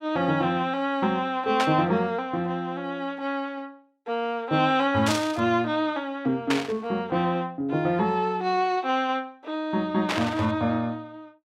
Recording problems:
burst of static; 4 times, first at 1.5 s; peak +4 dB vs average level

